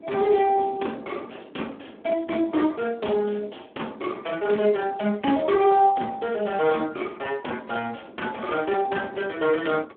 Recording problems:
telephone audio; 190 Hz to 3.6 kHz, Speex
wind noise; below 420 Hz, SNR 21 dB

